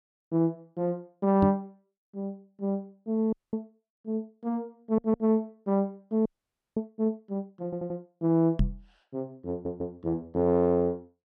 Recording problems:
microphone thump; at 1.5 s and at 8.5 s; peak +6 dB vs average level
frozen audio; at 3.5 s and at 6.5 s for 0.5 s
audio stuttering; at 5 s, at 7.5 s and at 9.5 s

